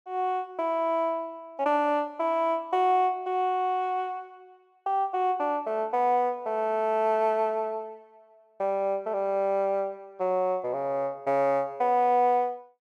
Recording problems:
none

